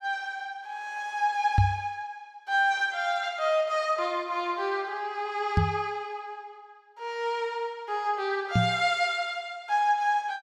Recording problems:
knock on the microphone; at 1.5 s, at 5.5 s and at 8.5 s; peak +9 dB vs average level

